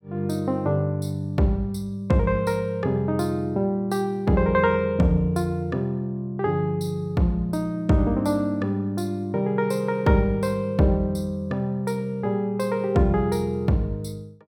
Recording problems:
none

